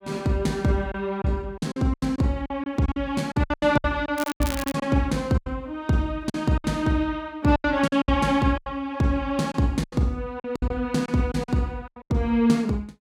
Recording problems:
lost packets; 13% of the sound replaced, filled with silence
crackle; at 4 s; loose cable, SNR 11 dB

